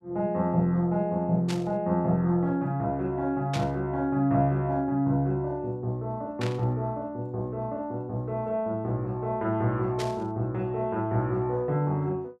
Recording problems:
static burst; 4 times, first at 1.5 s; peak -3 dB vs average level

